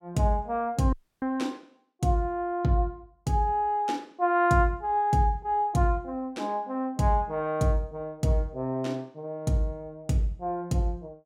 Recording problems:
audio cutting out; at 1 s

